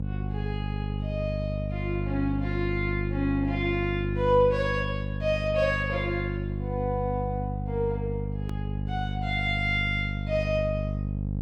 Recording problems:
hum; 50 Hz, harmonics up to 550 Hz, SNR 2 dB
click at an edit; at 8.5 s

